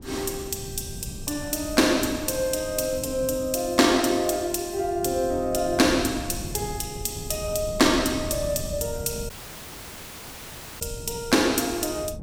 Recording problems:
wind noise; below 170 Hz, SNR 14 dB
dropout; at 9.5 s for 1.5 s

